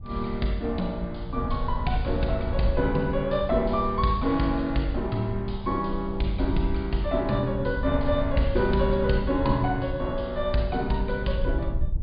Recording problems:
low-pass filter; nothing above 4.9 kHz
wind noise; below 72 Hz, SNR 7 dB

